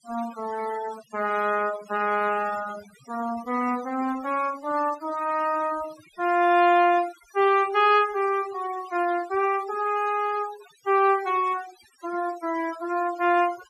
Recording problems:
noise reduction artefacts; signal-to-artefact ratio 17 dB

